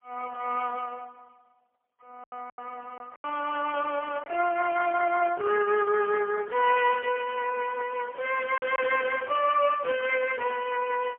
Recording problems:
telephone audio; 320 Hz to 2.9 kHz, AMR-NB, then MP3
lost packets; 3% of the sound replaced, filled with silence

